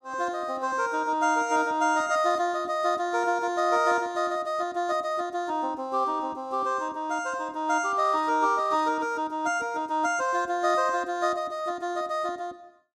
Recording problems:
none

